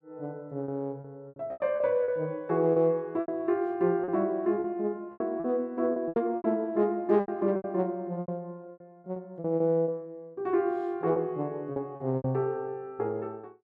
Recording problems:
packet loss; 12% of the sound replaced, filled with repeated pitch periods

